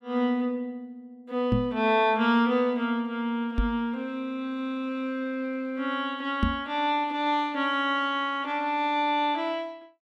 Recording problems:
knock on the microphone; at 1.5 s, at 3.5 s and at 6.5 s; peak +6 dB vs average level

